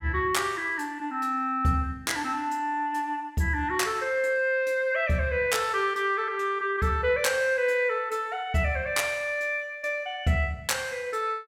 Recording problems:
none

